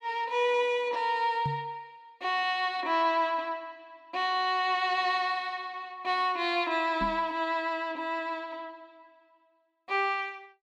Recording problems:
microphone thump; at 1.5 s and at 7 s; peak -1 dB vs average level

